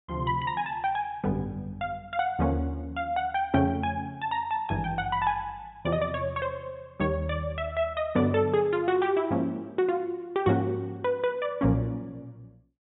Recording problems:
treble missing; nothing above 3.8 kHz

